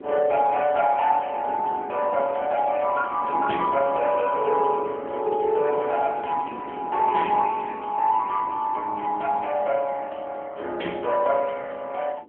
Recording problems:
telephone audio; 260 Hz to 3 kHz, AMR-NB
wind on the microphone; below 440 Hz, SNR 17 dB

